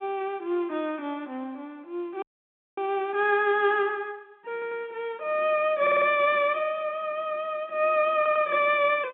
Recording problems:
telephone audio; 190 Hz to 3.6 kHz, G.711
audio freezing; at 2 s for 0.5 s
audio stuttering; at 4.5 s, at 6 s and at 8 s

